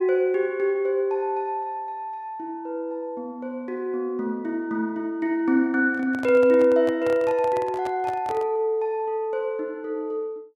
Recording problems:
microphone handling noise; from 6 to 8.5 s; peak -7 dB vs average level

